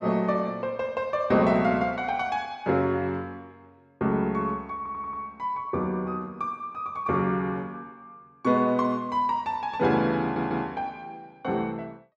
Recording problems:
stutter; at 5 s and at 10 s

